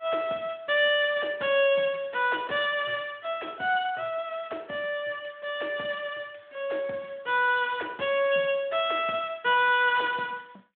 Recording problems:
phone line; 280 Hz to 3.4 kHz, Speex

